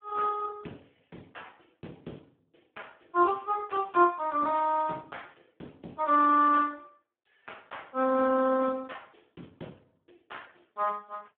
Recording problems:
phone line; 190 Hz to 3.4 kHz, Speex

